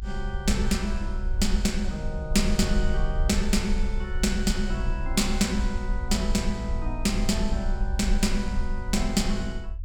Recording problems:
low-frequency rumble; below 54 Hz, SNR 3 dB

